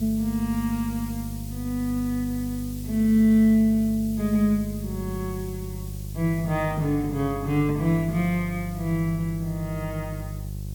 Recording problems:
hum; 50 Hz, harmonics up to 400 Hz, SNR 10 dB
background hiss; slope +5 dB per octave, SNR 19 dB

